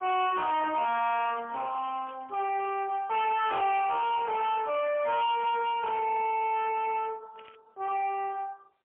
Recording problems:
phone line; 340 Hz to 3.5 kHz, AMR-NB, then MP3
distortion; soft clipping, signal-to-distortion ratio 5 dB
crackle; from 1 to 2.5 s, from 3 to 5 s and at 7.5 s; loose cable, SNR 26 dB

